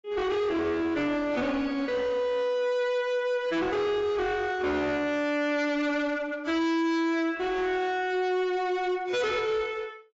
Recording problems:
lossy codec; AAC, log-spectral distance 2 dB, nothing above 7.3 kHz
distortion; hard clipping, uneven, signal-to-distortion ratio 7 dB

